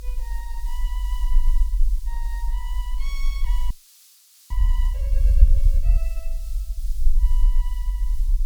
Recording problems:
hiss; slope +6 dB per octave, SNR 5 dB
rumble; below 46 Hz, strongest tone 22 Hz, SNR -19 dB
audio freezing; at 3.5 s for 1 s

